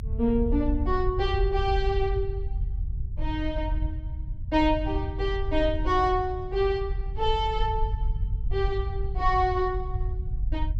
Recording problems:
low-frequency rumble; below 72 Hz, SNR 4 dB

